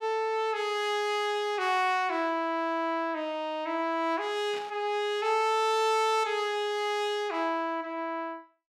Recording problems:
static burst; at 4.5 s; peak -10 dB vs average level

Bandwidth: 16.5 kHz